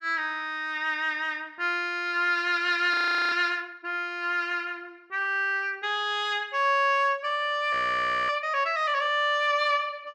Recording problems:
audio freezing; at 3 s and at 7.5 s for 0.5 s

